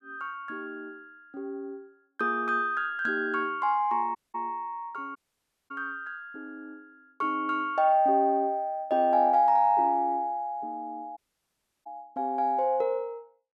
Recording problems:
audio cutting out; at 4 s, at 5 s for 0.5 s and at 11 s for 0.5 s

